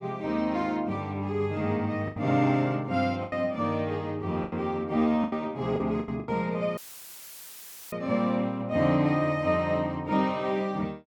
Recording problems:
lost packets; 5% of the sound replaced, filled with the last packet
audio cutting out; at 7 s for 1 s; filled with static

